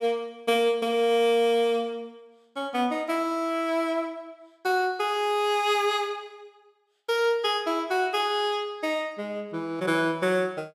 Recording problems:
none

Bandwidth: 14.5 kHz